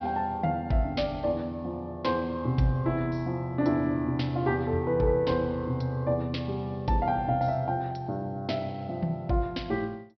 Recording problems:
low-pass filter; nothing above 5.5 kHz

